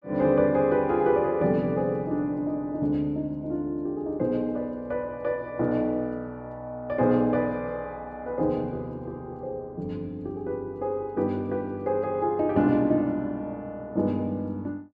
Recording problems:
none

